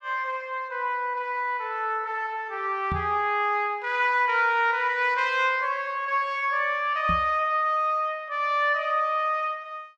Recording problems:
microphone bump; at 3 s and at 7 s; peak -2 dB vs average level

